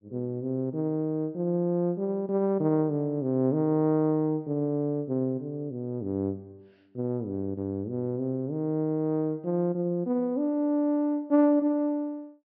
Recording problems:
treble missing; nothing above 5.5 kHz

